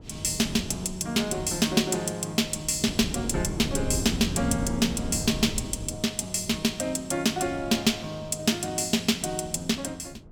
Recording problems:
wind on the microphone; below 260 Hz, SNR 10 dB

